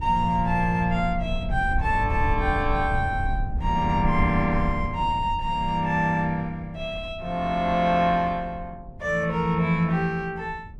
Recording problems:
rumble; below 96 Hz, SNR 8 dB

